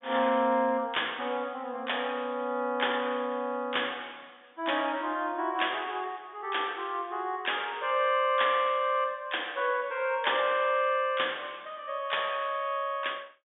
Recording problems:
low-pass filter; nothing above 3.6 kHz

